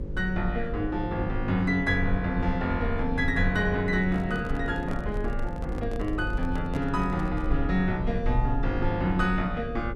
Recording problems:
mains hum; 50 Hz, harmonics up to 550 Hz, SNR 10 dB
rumble; below 56 Hz, SNR 7 dB
microphone handling noise; from 4 to 7.5 s; peak -5 dB vs average level

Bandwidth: 12.5 kHz